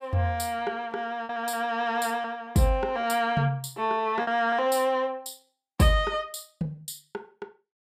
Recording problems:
packet loss; 4% of the sound replaced, filled with repeated pitch periods

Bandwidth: 15 kHz